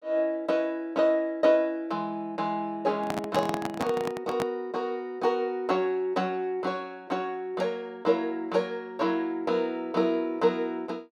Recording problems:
microphone handling noise; from 3 to 4.5 s; peak +2 dB vs average level

